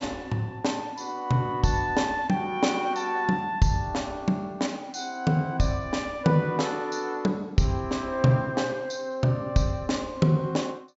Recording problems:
low-pass filter; nothing above 8 kHz

